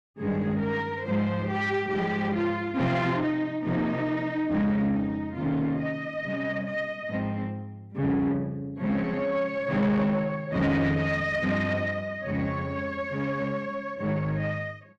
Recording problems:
distorted audio; soft clipping, signal-to-distortion ratio 9 dB

